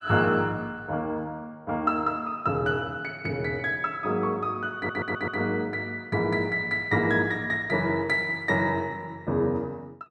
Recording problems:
stutter; at 5 s

